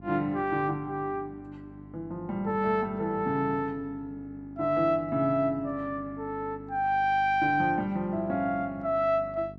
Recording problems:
electrical hum; 50 Hz, harmonics up to 800 Hz, SNR 19 dB

